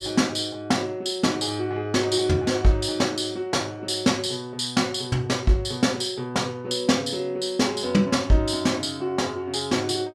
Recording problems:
none

